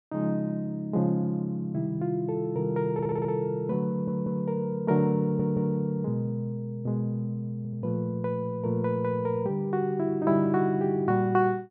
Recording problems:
stutter; 4 times, first at 3 s

